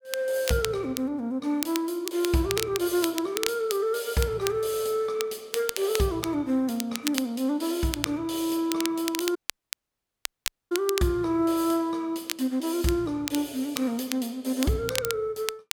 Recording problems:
crackle; vinyl, SNR 7 dB
dropout; at 9.5 s for 1.5 s

